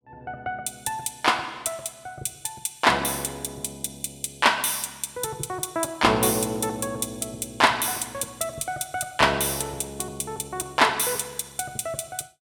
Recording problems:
none

